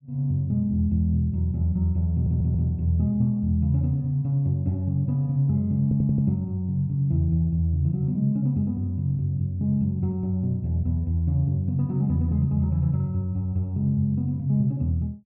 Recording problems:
audio stuttering; at 2 s and at 6 s

